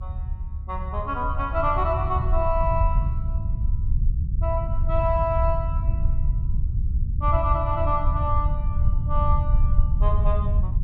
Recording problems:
rumble; below 82 Hz, SNR -2 dB

